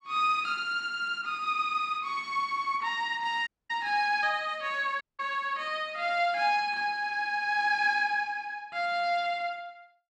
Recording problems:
audio cutting out; at 3.5 s and at 5 s

